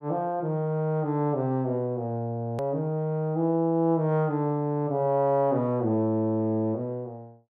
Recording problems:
edit click; at 2.5 s

